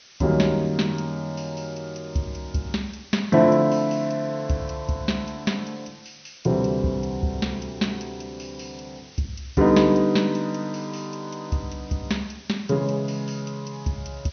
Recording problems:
treble missing; nothing above 6.3 kHz
background hiss; SNR 22 dB

